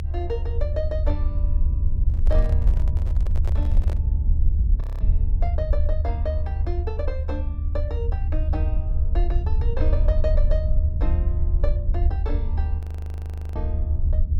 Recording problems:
rumble; below 76 Hz, SNR -10 dB
microphone handling noise; from 2 to 4 s; peak 0 dB vs average level
audio freezing; at 5 s and at 13 s for 1 s

